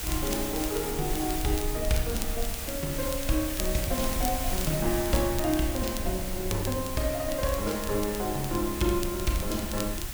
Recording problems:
hiss; slope 0 dB per octave, SNR 4 dB
rumble; below 64 Hz, SNR 8 dB
crackle; vinyl, SNR 12 dB

